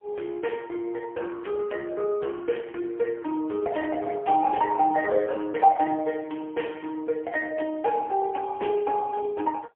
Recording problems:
phone line; 260 Hz to 2.6 kHz, AMR-NB, then MP3

